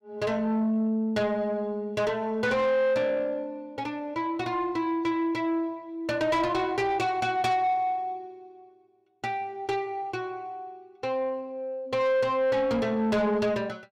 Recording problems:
distorted audio; soft clipping, signal-to-distortion ratio 11 dB

